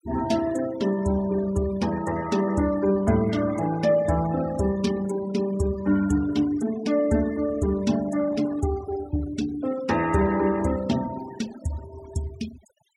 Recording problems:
noise reduction artefacts; signal-to-artefact ratio 16 dB

